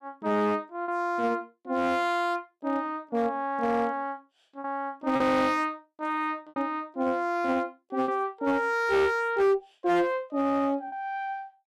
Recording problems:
distorted audio; hard clipping, signal-to-distortion ratio 12 dB
packet loss; 3% of the sound replaced, filled with repeated pitch periods

